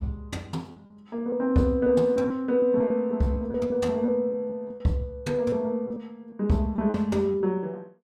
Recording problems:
lost packets; 9% of the sound replaced, filled with repeated pitch periods

